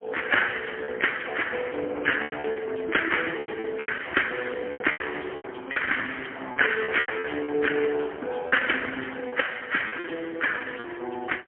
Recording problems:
phone line; 240 Hz to 3.2 kHz, AMR-NB, then MP3
packet loss; 10% of the sound replaced, filled with repeated pitch periods

